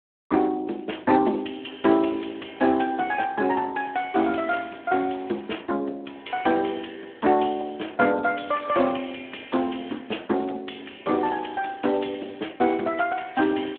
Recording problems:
phone line; 220 Hz to 3.4 kHz, Speex

